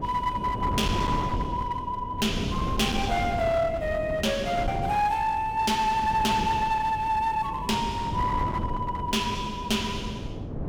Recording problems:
distorted audio; hard clipping, uneven, signal-to-distortion ratio 10 dB
wind noise; below 350 Hz, SNR 7 dB

